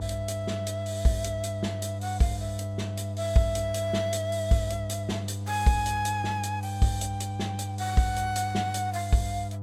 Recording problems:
mains hum; 50 Hz, harmonics up to 700 Hz, SNR 5 dB

